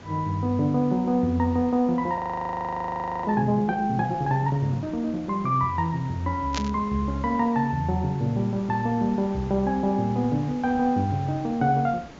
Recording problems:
low-pass filter; nothing above 7.3 kHz
background hiss; slope -5 dB per octave, SNR 19 dB
frozen audio; at 2 s for 1 s
burst of static; at 6.5 s; peak -1 dB vs average level

